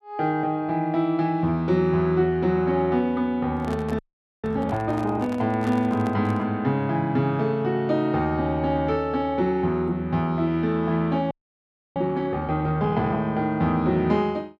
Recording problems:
handling noise; from 3.5 to 6.5 s; peak -9 dB vs average level
frozen audio; at 4 s and at 11 s for 0.5 s

